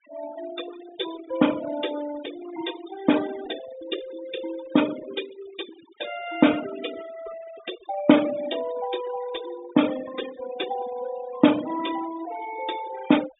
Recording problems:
low-pass filter; nothing above 4 kHz
denoising artefacts; signal-to-artefact ratio 13 dB

